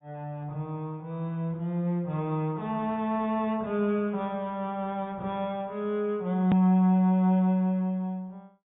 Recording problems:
treble cut off; nothing above 4 kHz
hard cut with a click; at 6.5 s

